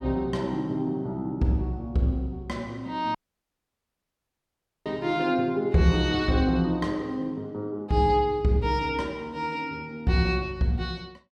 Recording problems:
audio cutting out; at 3 s for 1.5 s

